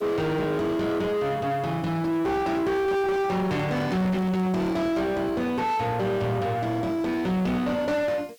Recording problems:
distorted audio; soft clipping, signal-to-distortion ratio 6 dB
background hiss; SNR 30 dB
microphone handling noise; from 3.5 to 5 s; peak -6 dB vs average level

